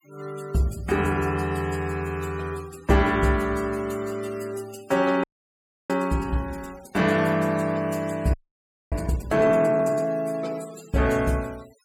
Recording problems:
noise reduction artefacts; signal-to-artefact ratio 22 dB
frozen audio; at 5 s for 0.5 s and at 8.5 s for 0.5 s

